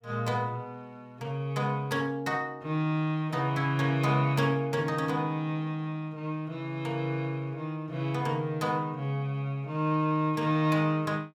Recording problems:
none

